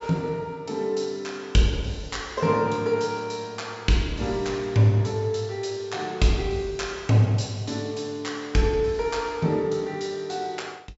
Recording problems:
treble missing; nothing above 8 kHz

